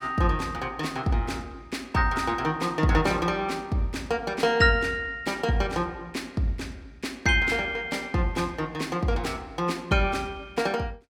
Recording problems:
none

